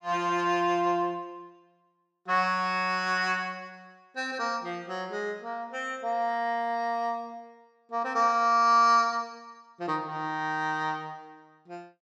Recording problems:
none

